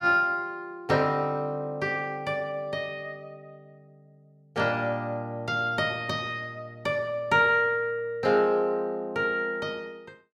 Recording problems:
none

